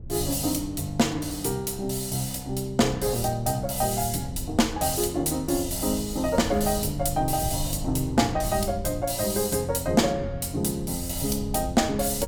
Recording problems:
low-frequency rumble; below 110 Hz, SNR 13 dB

